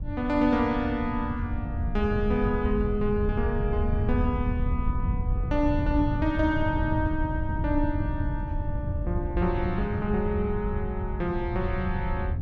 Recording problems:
wind noise; below 110 Hz, SNR 2 dB

